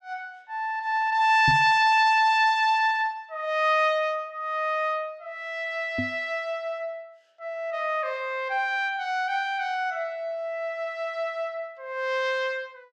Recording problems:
microphone thump; at 1.5 s and at 6 s; peak 0 dB vs average level

